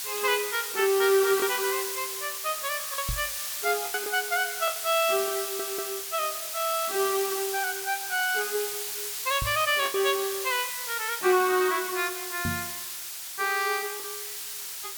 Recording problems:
background hiss; slope +4 dB per octave, SNR 4 dB
lost packets; 3% of the sound replaced, filled with the last packet
knock on the microphone; at 3 s, at 9.5 s and at 12 s; peak -1 dB vs average level
stutter; at 5.5 s

